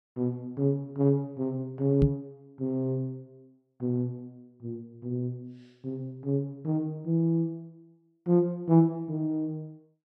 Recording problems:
microphone bump; at 2 s; peak +7 dB vs average level

